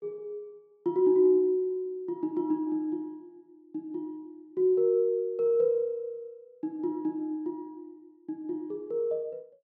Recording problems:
none

